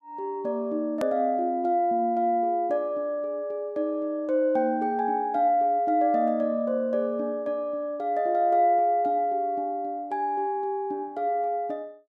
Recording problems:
click at an edit; at 1 s

